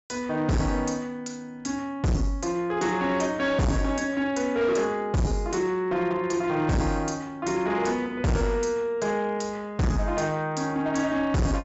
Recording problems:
low-pass filter; nothing above 8 kHz
distorted audio; hard clipping, signal-to-distortion ratio 6 dB

